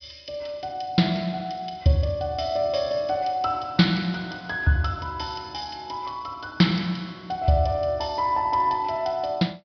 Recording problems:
low-pass filter; nothing above 5.5 kHz

